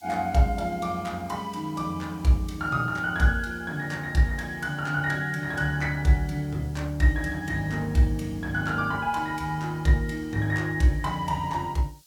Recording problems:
background hiss; SNR 28 dB

